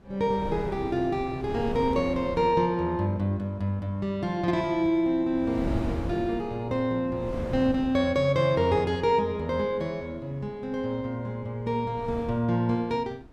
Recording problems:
wind on the microphone; below 320 Hz, SNR 10 dB

